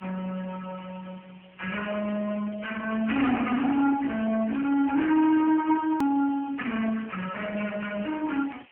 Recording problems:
telephone audio; 240 Hz to 3.1 kHz, AMR-NB
distortion; hard clipping, signal-to-distortion ratio 16 dB
hiss; SNR 28 dB
edit click; at 6 s

